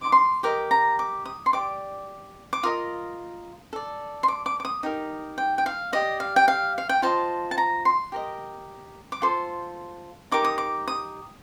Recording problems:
background hiss; slope -5 dB per octave, SNR 26 dB

